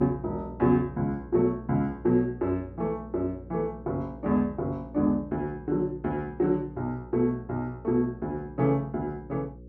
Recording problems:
hum; 60 Hz, harmonics up to 540 Hz, SNR 17 dB

